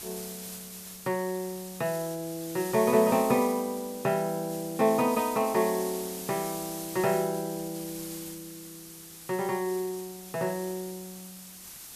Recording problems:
background hiss; SNR 11 dB

